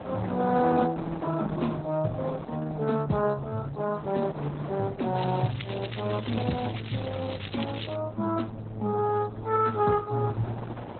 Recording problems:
lossy codec; Speex, then Opus, log-spectral distance 7 dB, nothing above 4 kHz
wind noise; below 900 Hz, SNR 14 dB
crackle; from 5 to 8 s; loose cable, SNR 11 dB

